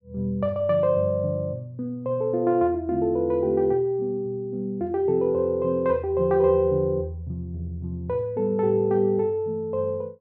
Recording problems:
none

